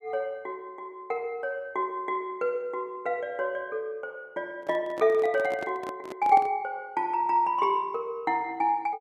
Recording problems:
handling noise; from 4.5 to 6.5 s; peak -5 dB vs average level

